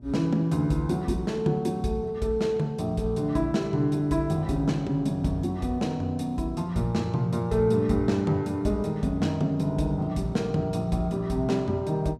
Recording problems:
electrical hum; 60 Hz, harmonics up to 600 Hz, SNR 24 dB

